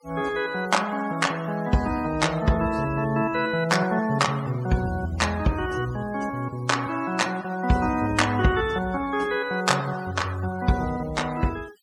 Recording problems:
denoising artefacts; signal-to-artefact ratio 19 dB

